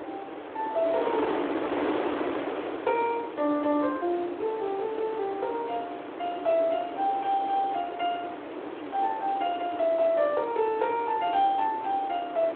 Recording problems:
phone line; 240 Hz to 3.6 kHz, Speex
wind on the microphone; below 900 Hz, SNR 7 dB

